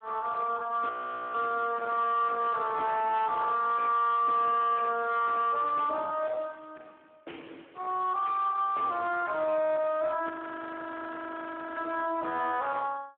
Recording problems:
telephone audio; 280 Hz to 3.6 kHz, Speex
distorted audio; soft clipping, signal-to-distortion ratio 11 dB
audio freezing; at 1 s and at 10 s for 1.5 s

